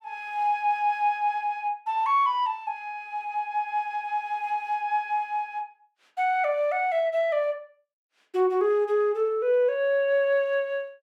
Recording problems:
none

